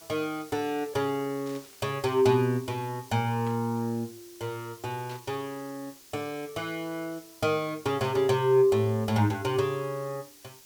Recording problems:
hiss; slope +1 dB per octave, SNR 21 dB
static burst; 4 times, first at 1.5 s; peak -13 dB vs average level

